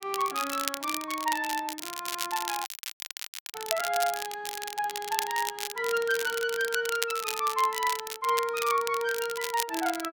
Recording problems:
crackling; vinyl, SNR 5 dB
audio cutting out; at 2.5 s for 1 s

